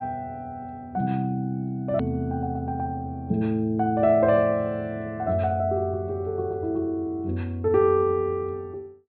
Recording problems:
treble cut off; nothing above 4.3 kHz
edit click; at 2 s

